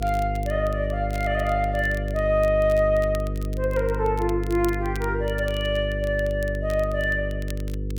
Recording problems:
electrical hum; 50 Hz, harmonics up to 500 Hz, SNR 5 dB
crackling; vinyl, SNR 22 dB

